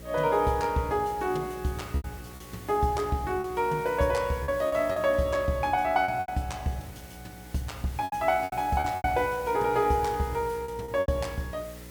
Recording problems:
hum; 60 Hz, harmonics up to 540 Hz, SNR 19 dB
hiss; slope -2 dB per octave, SNR 20 dB
lost packets; 7% of the sound replaced, filled with repeated pitch periods

